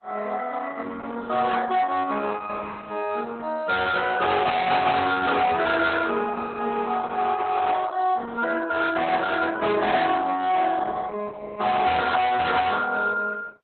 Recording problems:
lossy codec; Opus, log-spectral distance 4 dB, nothing above 4 kHz
distorted audio; hard clipping, signal-to-distortion ratio 7 dB

